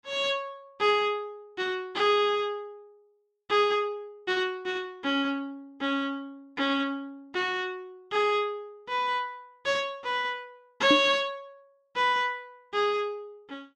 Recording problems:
microphone thump; at 11 s; peak +6 dB vs average level

